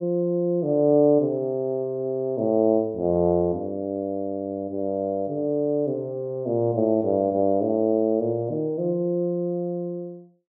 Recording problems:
none

